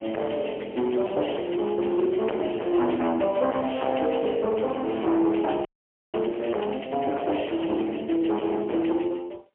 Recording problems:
phone line; 300 Hz to 2.8 kHz, AMR-NB, then MP3
distortion; hard clipping, signal-to-distortion ratio 6 dB
audio freezing; at 5.5 s

